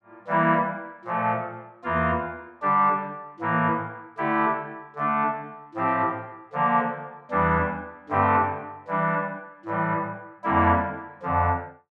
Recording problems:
none

